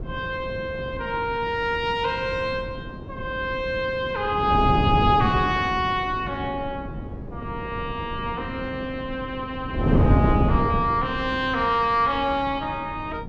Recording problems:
wind noise; below 290 Hz, SNR 4 dB

